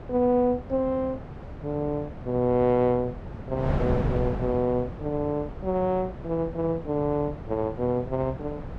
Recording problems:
wind on the microphone; below 400 Hz, SNR 9 dB

